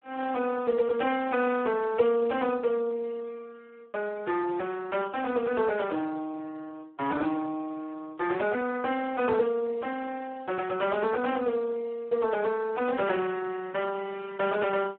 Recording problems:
phone line; 260 Hz to 2.3 kHz, Speex

